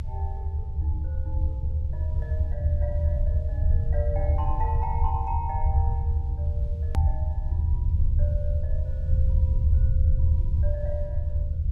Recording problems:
hum; 60 Hz, harmonics up to 600 Hz, SNR 23 dB
background hiss; slope -4 dB per octave, SNR 29 dB
rumble; below 80 Hz, SNR -11 dB
edit click; at 7 s

